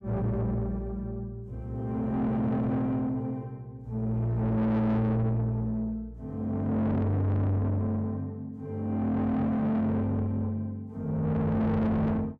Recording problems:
distortion; soft clipping, signal-to-distortion ratio 7 dB

